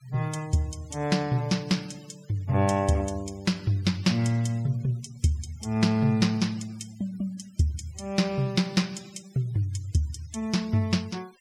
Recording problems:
noise reduction artefacts; signal-to-artefact ratio 24 dB

